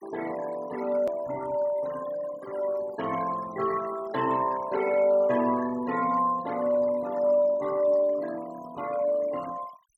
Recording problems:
noise reduction artefacts; signal-to-artefact ratio 16 dB
click at an edit; at 1 s

